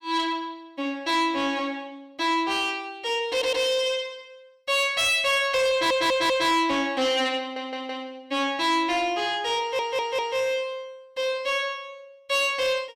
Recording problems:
distorted audio; soft clipping, signal-to-distortion ratio 11 dB
audio stuttering; 4 times, first at 3.5 s

